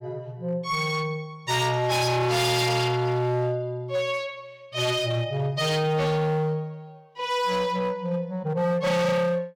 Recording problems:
distorted audio; hard clipping, signal-to-distortion ratio 6 dB

